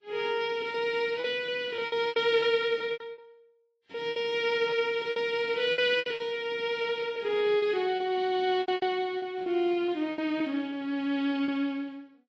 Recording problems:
lossy codec; Vorbis, then MP3, log-spectral distance 2 dB, nothing above 8.5 kHz
packet loss; 12% of the sound replaced, filled with repeated pitch periods

